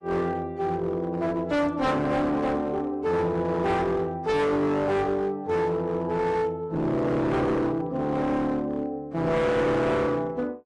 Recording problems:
lossy compression; AAC, log-spectral distance 2 dB, nothing above 10.7 kHz
distorted audio; hard clipping, uneven, signal-to-distortion ratio 7 dB

